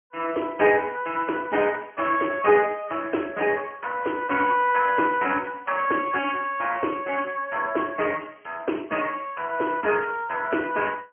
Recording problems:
phone line; 240 Hz to 3 kHz, Speex

